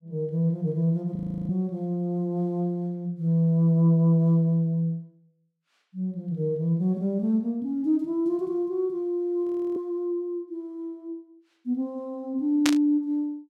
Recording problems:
frozen audio; at 1 s and at 9.5 s
static burst; at 13 s; peak +5 dB vs average level

